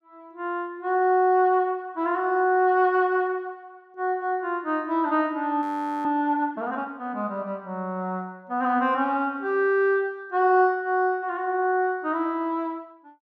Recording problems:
frozen audio; at 5.5 s

